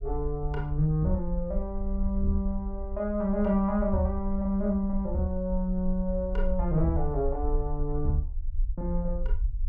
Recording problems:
low-frequency rumble; below 52 Hz, SNR 5 dB

